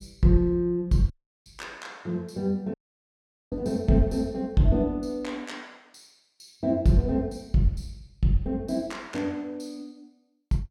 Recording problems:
dropout; at 1 s and at 2.5 s for 1 s

